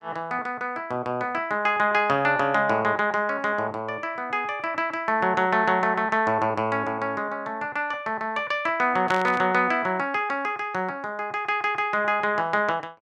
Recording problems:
static burst; at 9 s; peak -3 dB vs average level

